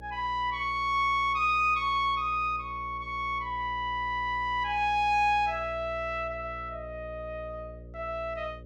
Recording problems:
hum; 60 Hz, harmonics up to 600 Hz, SNR 18 dB

